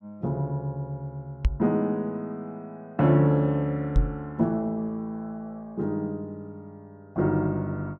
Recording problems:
microphone thump; at 1.5 s and at 4 s; peak +8 dB vs average level

